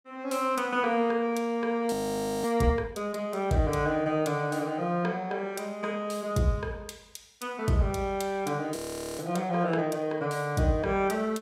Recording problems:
audio freezing; at 2 s for 0.5 s and at 9 s

